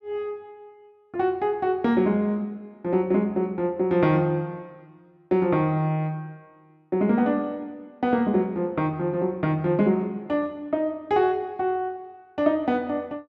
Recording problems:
none

